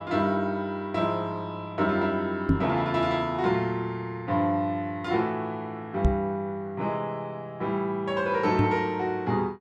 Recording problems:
microphone thump; at 2.5 s, at 6 s and at 8.5 s; peak +8 dB vs average level

